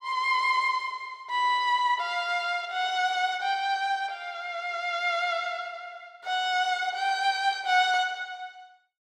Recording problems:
none

